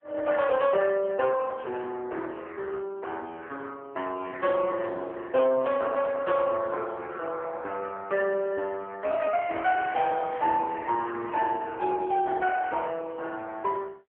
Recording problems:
phone line; 280 Hz to 2.6 kHz, AMR-NB

